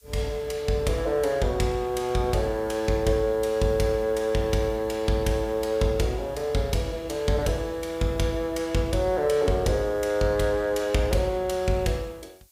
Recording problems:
hiss; SNR 30 dB

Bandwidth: 15.5 kHz